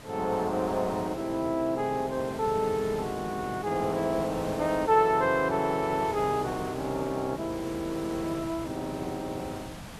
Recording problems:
hiss; slope -4 dB per octave, SNR 13 dB

